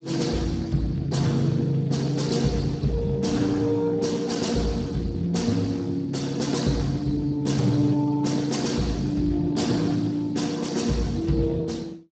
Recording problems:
lossy compression; Speex, log-spectral distance 4 dB, nothing above 7.6 kHz

